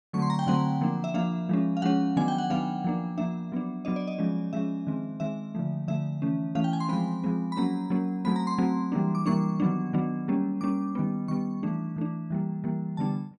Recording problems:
none

